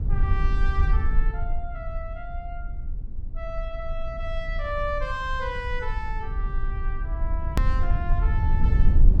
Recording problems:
rumble; below 66 Hz, SNR -6 dB
edit click; at 7.5 s

